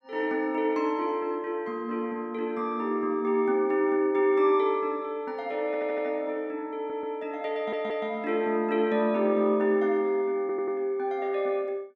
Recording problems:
stutter; 4 times, first at 5.5 s

